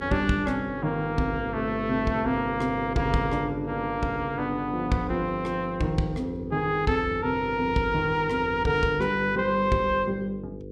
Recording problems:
hum; 50 Hz, harmonics up to 500 Hz, SNR 11 dB

